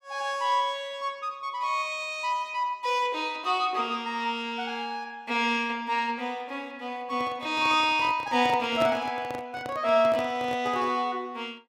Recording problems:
handling noise; from 7 to 11 s; peak 0 dB vs average level

